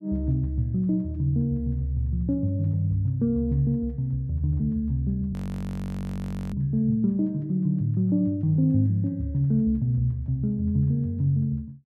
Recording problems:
audio freezing; at 5.5 s for 1 s

